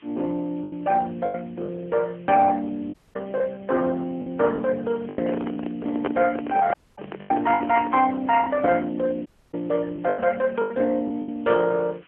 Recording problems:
phone line; 260 Hz to 3.1 kHz, AMR-NB
hiss; SNR 29 dB
packet loss; 8% of the sound replaced, filled with the last packet
dropout; at 3 s, at 6.5 s and at 9.5 s
handling noise; from 5 to 8 s; peak +1 dB vs average level

